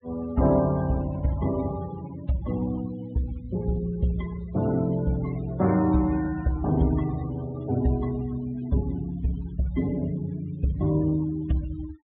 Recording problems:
treble missing; nothing above 4 kHz
noise reduction artefacts; signal-to-artefact ratio 18 dB

